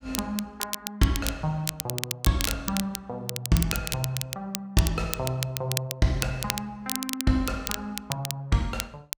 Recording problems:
crackle; vinyl, SNR 3 dB

